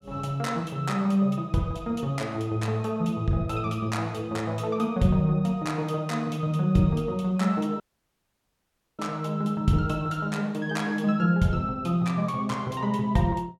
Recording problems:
audio cutting out; at 8 s for 1 s

